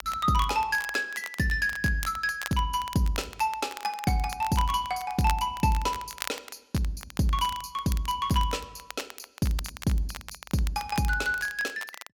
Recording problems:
crackling; vinyl, SNR 13 dB

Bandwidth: 17 kHz